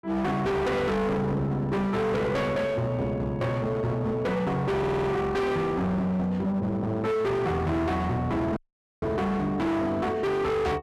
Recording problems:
distortion; hard clipping, signal-to-distortion ratio 6 dB
stutter; at 5 s
dropout; at 8.5 s

